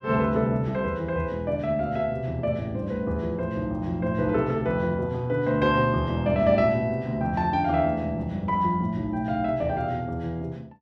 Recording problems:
none

